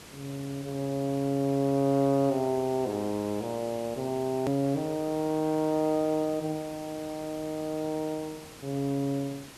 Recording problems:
background hiss; slope -3 dB per octave, SNR 17 dB
click at an edit; at 4.5 s

